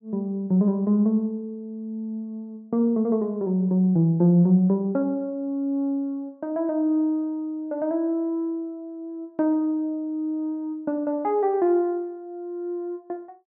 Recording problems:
none

